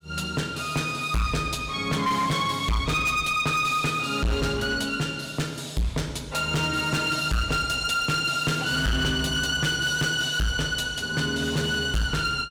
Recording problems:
distortion; hard clipping, signal-to-distortion ratio 7 dB

